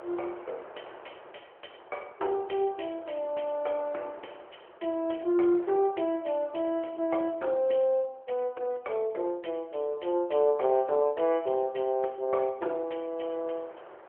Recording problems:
phone line; 300 Hz to 3.4 kHz, AMR-NB
wind on the microphone; below 1.1 kHz, SNR 21 dB

